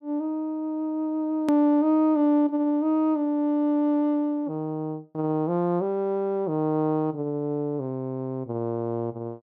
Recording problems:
edit click; at 1.5 s

